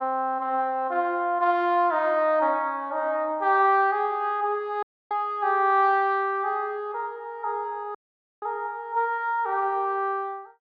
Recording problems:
audio cutting out; at 5 s and at 8 s

